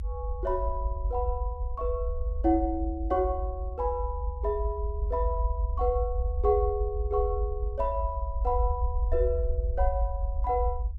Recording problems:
rumble; below 70 Hz, strongest tone 50 Hz, SNR 1 dB

